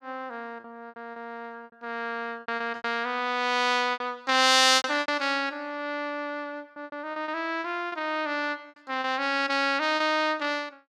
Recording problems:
lost packets; 10% of the sound replaced, filled with repeated pitch periods

